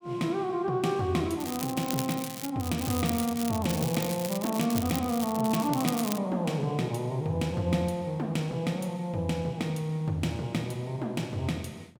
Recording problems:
crackle; from 1.5 to 2.5 s and from 2.5 to 6 s; loose cable, SNR 8 dB

